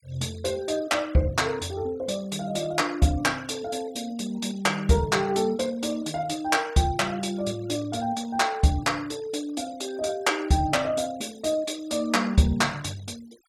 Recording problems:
noise reduction artefacts; signal-to-artefact ratio 21 dB

